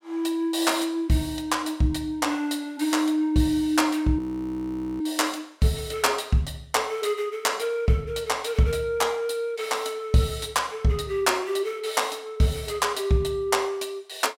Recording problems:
audio freezing; at 4 s for 1 s

